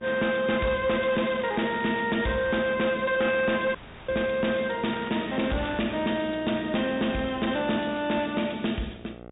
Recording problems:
low-pass filter; nothing above 4 kHz
distortion; soft clipping, signal-to-distortion ratio 11 dB
hum; 60 Hz, harmonics up to 2.1 kHz, SNR 20 dB
crackle; from 1 to 2 s and from 5 to 6 s; loose cable, SNR 17 dB
dropout; at 4 s

